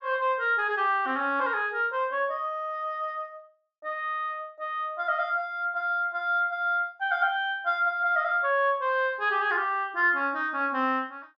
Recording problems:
treble cut off; nothing above 8 kHz

